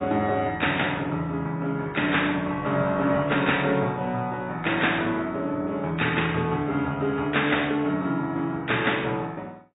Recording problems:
treble missing; nothing above 3.8 kHz
lossy codec; MP3, log-spectral distance 3 dB

